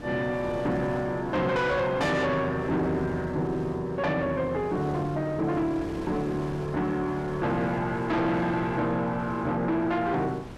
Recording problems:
distorted audio; soft clipping, signal-to-distortion ratio 7 dB
wind on the microphone; below 700 Hz, SNR 14 dB

